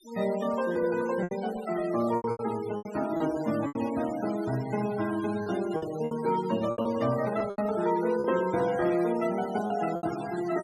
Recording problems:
noise reduction artefacts; signal-to-artefact ratio 15 dB
lost packets; 9% of the sound replaced, filled with repeated pitch periods

